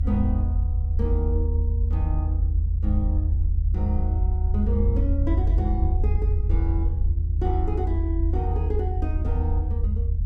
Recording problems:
rumble; below 80 Hz, SNR -8 dB

